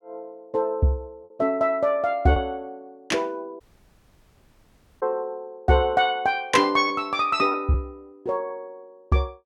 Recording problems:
packet loss; 2% of the sound replaced, filled with repeated pitch periods
dropout; at 3.5 s for 1.5 s

